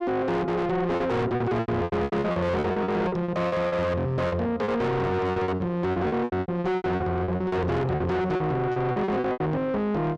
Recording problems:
distortion; soft clipping, signal-to-distortion ratio 6 dB
lost packets; 17% of the sound replaced, filled with repeated pitch periods

